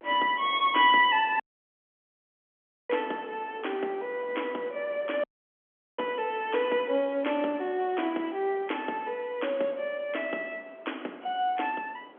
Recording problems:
phone line; 220 Hz to 3.4 kHz, G.711
wind on the microphone; below 930 Hz, SNR 21 dB
audio cutting out; at 1.5 s for 1.5 s and at 5 s for 0.5 s

